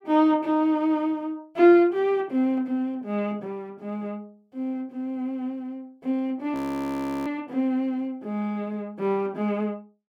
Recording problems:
audio freezing; at 6.5 s for 0.5 s

